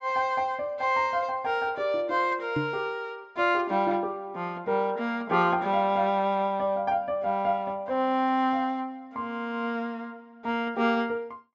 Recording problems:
low-pass filter; nothing above 8 kHz
knock on the microphone; at 2.5 s; peak +1 dB vs average level

